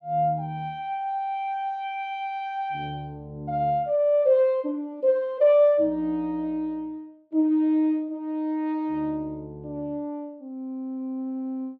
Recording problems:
none

